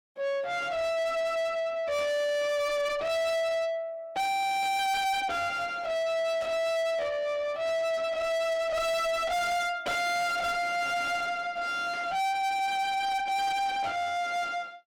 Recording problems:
distortion; soft clipping, signal-to-distortion ratio 7 dB
static burst; 4 times, first at 2 s; peak -14 dB vs average level

